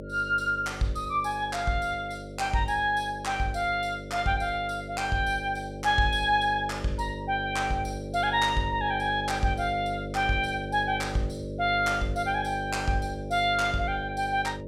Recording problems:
hum; 50 Hz, harmonics up to 600 Hz, SNR 10 dB

